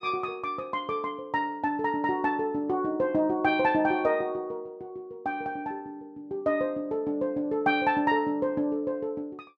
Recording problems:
none

